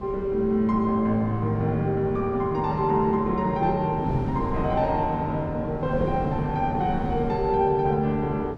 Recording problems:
wind noise; below 240 Hz, SNR 11 dB

